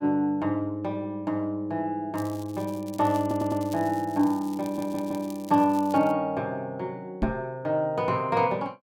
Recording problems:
crackle; from 2 to 6 s; loose cable, SNR 21 dB
audio stuttering; at 3 s and at 4.5 s
knock on the microphone; at 7 s; peak +4 dB vs average level

